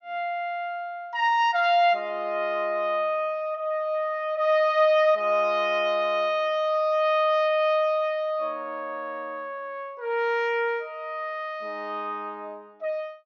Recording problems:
treble cut off; nothing above 6.7 kHz

